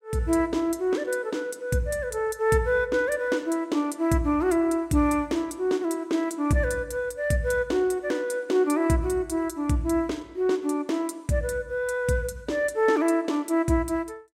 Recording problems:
none

